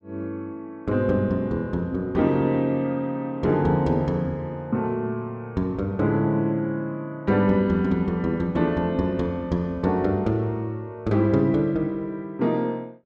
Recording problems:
none

